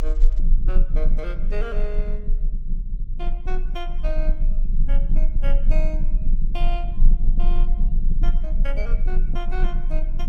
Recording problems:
codec artefacts; Opus, log-spectral distance 2 dB, nothing above 15.5 kHz
low-frequency rumble; below 30 Hz, strongest tone 22 Hz, SNR -11 dB

